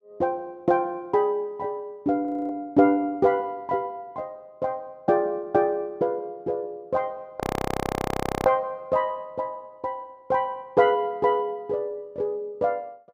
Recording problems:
audio freezing; at 2.5 s and at 7.5 s for 1 s

